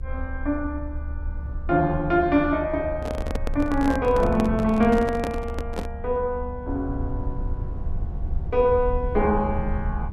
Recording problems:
low-frequency rumble; below 72 Hz, SNR 8 dB
handling noise; from 3 to 6 s; peak -1 dB vs average level

